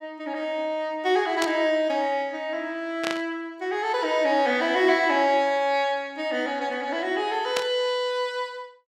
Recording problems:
burst of static; at 1.5 s, at 3 s and at 7.5 s; peak +1 dB vs average level

